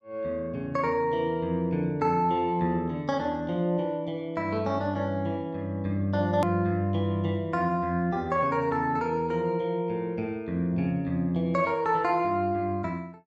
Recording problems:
click at an edit; at 6.5 s

